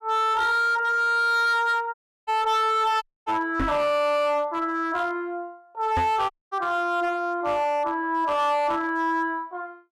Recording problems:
distortion; hard clipping, signal-to-distortion ratio 10 dB
dropout; at 2 s, at 3 s and at 6.5 s
microphone bump; at 3.5 s and at 6 s; peak +1 dB vs average level

